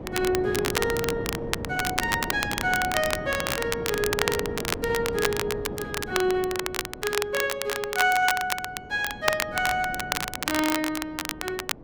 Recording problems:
wind noise; below 470 Hz, SNR 9 dB
crackle; vinyl, SNR 3 dB

